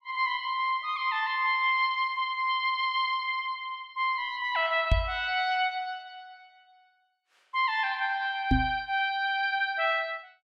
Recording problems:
microphone bump; at 5 s and at 8.5 s; peak +7 dB vs average level

